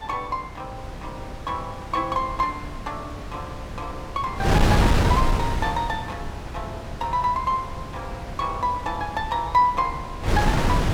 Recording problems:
wind on the microphone; below 480 Hz, SNR 1 dB

